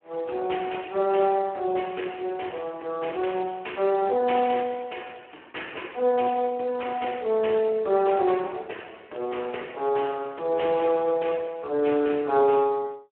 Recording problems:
telephone audio; 260 Hz to 3 kHz, Speex

